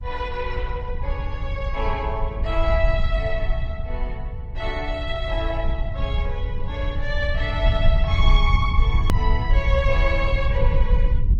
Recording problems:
lossy compression; Opus, then MP3, log-spectral distance 2 dB
low-frequency rumble; below 66 Hz, SNR -3 dB
hard cut with a click; at 9 s

